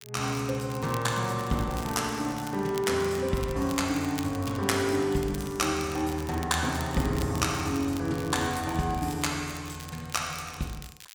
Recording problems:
crackle; vinyl, SNR 17 dB

